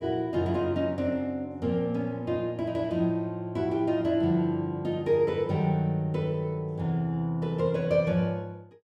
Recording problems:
none

